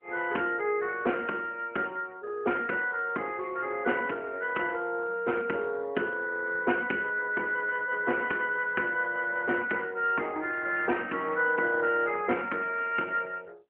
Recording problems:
phone line; 220 Hz to 3.1 kHz, AMR-NB

